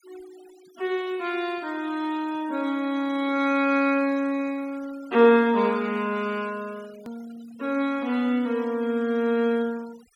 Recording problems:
denoising artefacts; signal-to-artefact ratio 24 dB
edit click; at 7 s

